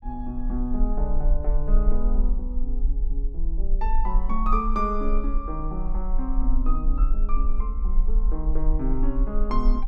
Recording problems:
rumble; below 38 Hz, strongest tone 20 Hz, SNR -4 dB

